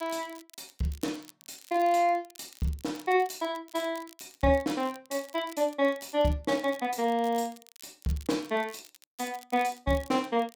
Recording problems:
crackle; vinyl, SNR 22 dB

